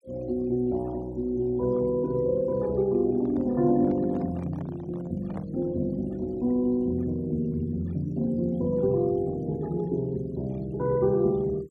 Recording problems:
denoising artefacts; signal-to-artefact ratio 27 dB
microphone handling noise; from 3 to 5.5 s; peak -10 dB vs average level

